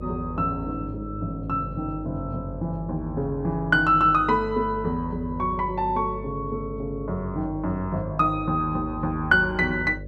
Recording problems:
hum; 50 Hz, harmonics up to 600 Hz, SNR 12 dB

